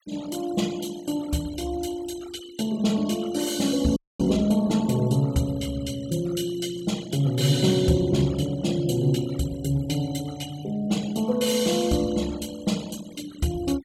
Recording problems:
denoising artefacts; signal-to-artefact ratio 18 dB
audio freezing; at 4 s

